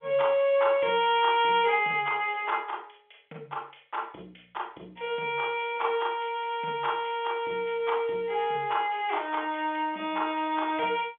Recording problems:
phone line; 260 Hz to 3.5 kHz, G.711

